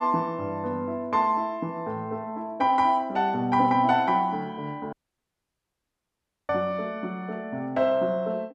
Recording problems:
dropout; at 5 s for 1.5 s

